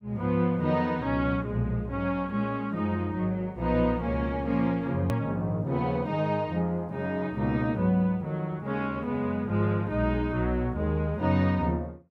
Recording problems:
hard cut with a click; at 5 s

